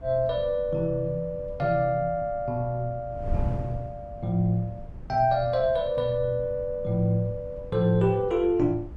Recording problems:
wind noise; below 140 Hz, SNR 14 dB

